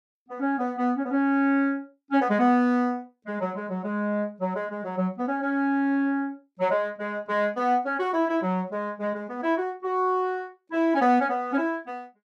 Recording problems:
none

